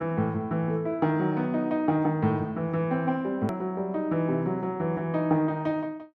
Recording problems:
click at an edit; at 3.5 s

